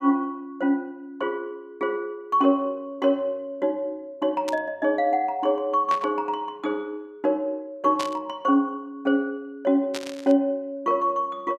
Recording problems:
burst of static; 4 times, first at 4.5 s; peak -3 dB vs average level

